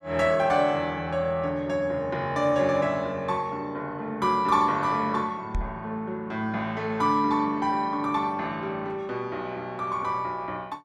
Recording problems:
microphone thump; at 5.5 s; peak 0 dB vs average level

